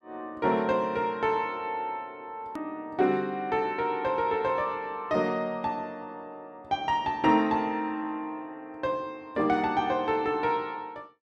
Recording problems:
hard cut with a click; at 2.5 s

